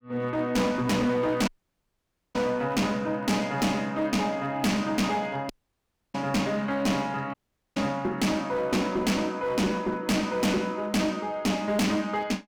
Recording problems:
distortion; hard clipping, uneven, signal-to-distortion ratio 7 dB
dropout; at 1.5 s for 1 s, at 5.5 s for 0.5 s and at 7.5 s

